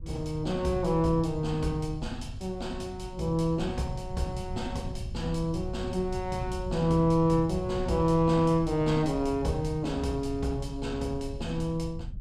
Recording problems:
wind noise; below 110 Hz, SNR 11 dB

